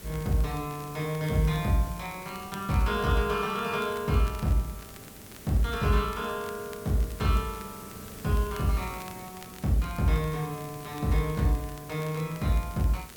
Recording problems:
hiss; SNR 15 dB
crackling; vinyl, SNR 23 dB

